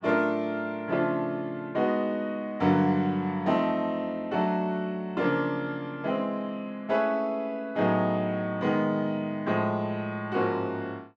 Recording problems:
none

